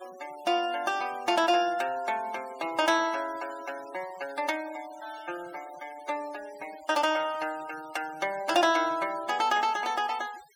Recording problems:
denoising artefacts; signal-to-artefact ratio 19 dB

